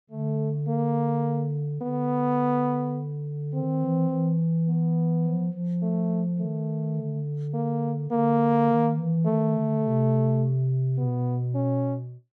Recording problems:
none

